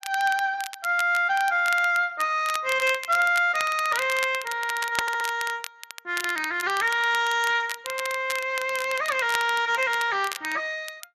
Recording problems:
codec artefacts; Speex, log-spectral distance 3 dB
crackling; vinyl, SNR 12 dB
audio stuttering; at 5 s

